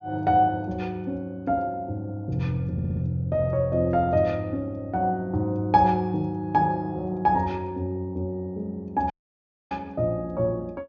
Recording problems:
treble cut off; nothing above 6.9 kHz
stutter; at 2.5 s
audio cutting out; at 9 s for 0.5 s

